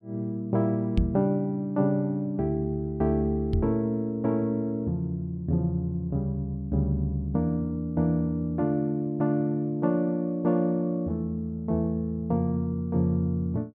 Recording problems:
microphone thump; at 1 s and at 3.5 s; peak +5 dB vs average level

